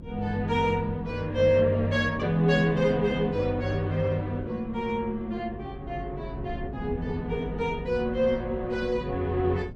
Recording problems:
hum; 50 Hz, harmonics up to 550 Hz, SNR 18 dB
wind on the microphone; below 210 Hz, SNR 15 dB

